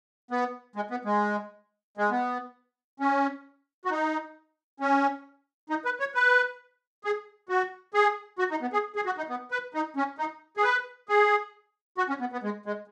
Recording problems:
none

